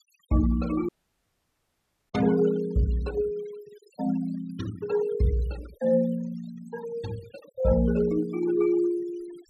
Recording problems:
denoising artefacts; signal-to-artefact ratio 18 dB
audio cutting out; at 1 s for 1 s

